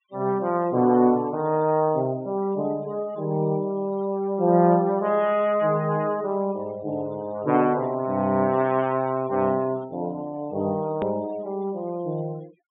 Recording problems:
treble cut off; nothing above 4 kHz
noise reduction artefacts; signal-to-artefact ratio 23 dB
edit click; at 11 s

